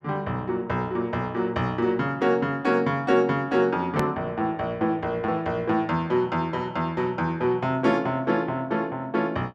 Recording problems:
click at an edit; at 4 s

